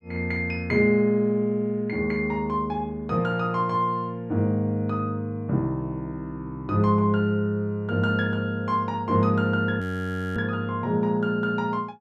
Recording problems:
audio freezing; at 10 s for 0.5 s

